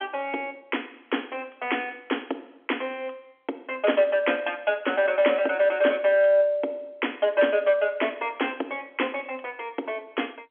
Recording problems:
telephone audio; 240 Hz to 3.4 kHz, G.711

